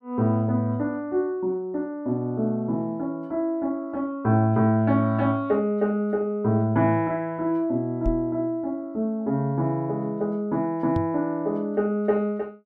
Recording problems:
microphone bump; at 8 s and at 11 s; peak +1 dB vs average level

